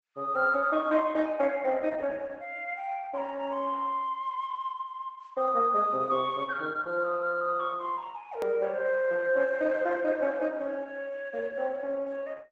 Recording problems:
codec artefacts; Opus, log-spectral distance 3 dB
click at an edit; at 8.5 s

